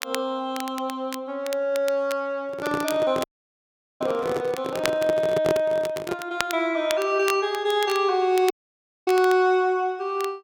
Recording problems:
crackle; vinyl, SNR 13 dB
microphone handling noise; from 2.5 to 6.5 s; peak +2 dB vs average level
audio cutting out; at 3 s for 1 s and at 8.5 s for 0.5 s

